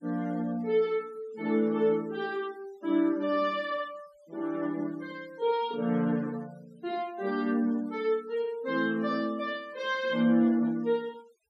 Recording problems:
denoising artefacts; signal-to-artefact ratio 26 dB

